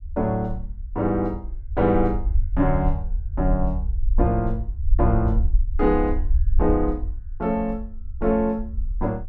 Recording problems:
rumble; below 60 Hz, SNR 3 dB

